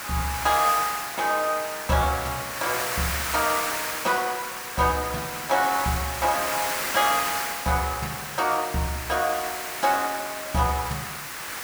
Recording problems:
background hiss; SNR 4 dB

